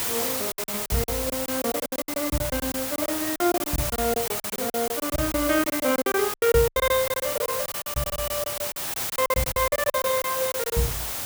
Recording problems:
hiss; slope -1 dB per octave, SNR 2 dB
lost packets; 19% of the sound replaced, filled with silence

